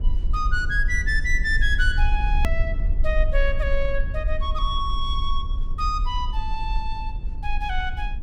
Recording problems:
low-frequency rumble; below 50 Hz, strongest tone 18 Hz, SNR 0 dB
click at an edit; at 2.5 s

